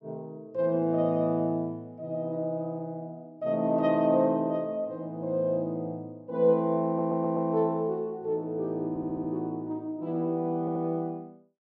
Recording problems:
audio stuttering; at 7 s, at 9 s and at 11 s

